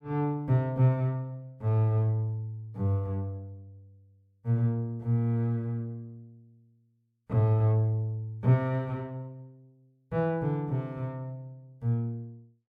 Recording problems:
none

